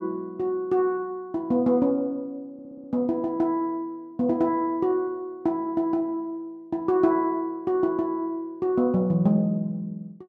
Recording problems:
audio stuttering; at 2.5 s

